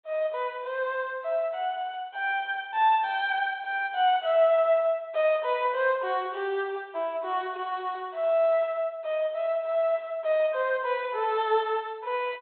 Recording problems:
treble missing; nothing above 4 kHz

